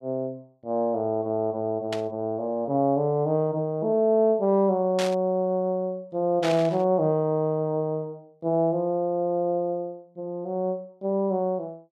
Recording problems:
static burst; at 2 s, at 5 s and at 6.5 s; peak -2 dB vs average level

